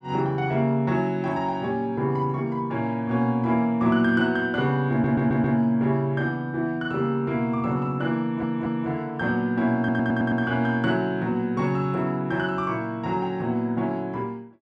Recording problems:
audio stuttering; at 5 s, at 8 s and at 10 s

